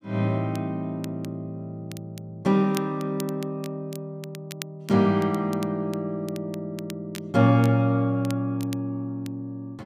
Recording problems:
crackle; vinyl, SNR 19 dB

